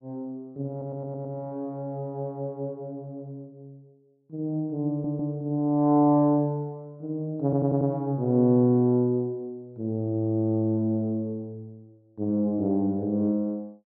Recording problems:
stutter; at 0.5 s, at 5 s and at 7.5 s

